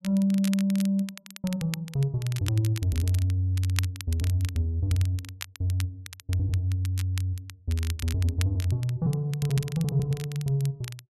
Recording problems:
crackle; vinyl, SNR 14 dB

